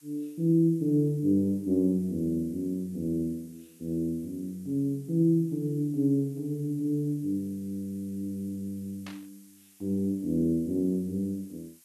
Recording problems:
hiss; slope +4 dB per octave, SNR 27 dB
burst of static; at 9 s; peak -11 dB vs average level

